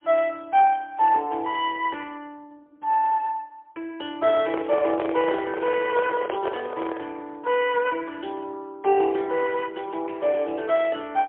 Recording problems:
telephone audio; 280 Hz to 3.4 kHz, AMR-NB, then MP3
microphone handling noise; from 4.5 to 7 s; peak -1 dB vs average level

